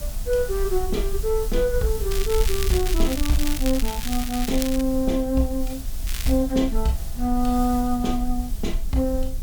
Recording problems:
hiss; slope +1 dB per octave, SNR 14 dB
low-frequency rumble; below 46 Hz, strongest tone 20 Hz, SNR 6 dB
crackling; from 2 to 5 s and at 6 s; loose cable, SNR 7 dB

